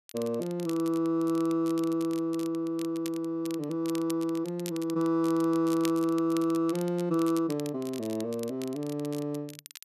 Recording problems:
crackling; vinyl, SNR 17 dB

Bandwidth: 13.5 kHz